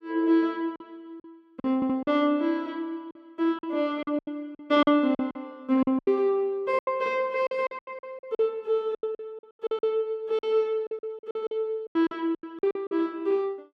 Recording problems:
packet loss; 14% of the sound replaced, filled with silence
stutter; at 2 s

